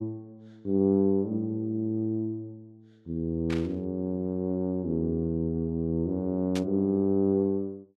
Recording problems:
burst of static; at 3.5 s and at 6.5 s; peak -5 dB vs average level

